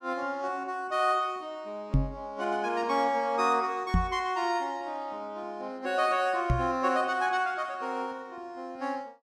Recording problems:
microphone bump; at 2 s, at 4 s and at 6.5 s; peak +8 dB vs average level

